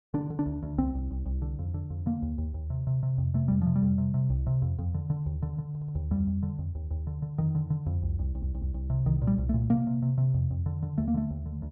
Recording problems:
stutter; at 5.5 s and at 8 s

